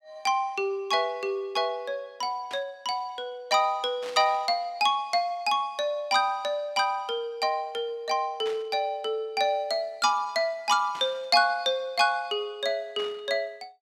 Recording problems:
static burst; 5 times, first at 2.5 s; peak -10 dB vs average level

